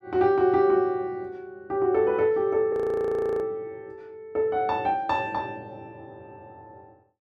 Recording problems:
audio freezing; at 2.5 s for 0.5 s

